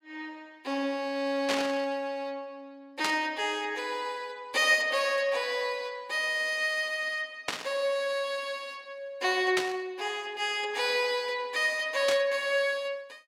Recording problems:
static burst; 5 times, first at 1.5 s; peak +3 dB vs average level

